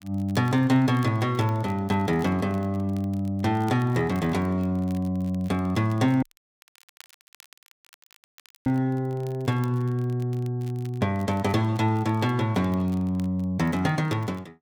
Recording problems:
crackling; vinyl, SNR 28 dB
dropout; at 6 s for 2.5 s

